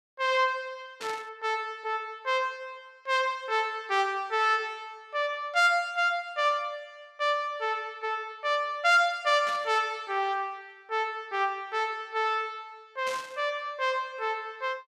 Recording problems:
static burst; at 1 s, at 9.5 s and at 13 s; peak -7 dB vs average level

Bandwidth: 14.5 kHz